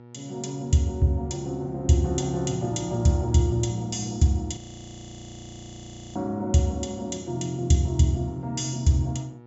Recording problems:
low-pass filter; nothing above 8 kHz
hum; 60 Hz, harmonics up to 1.4 kHz, SNR 22 dB
audio freezing; at 4.5 s for 1.5 s

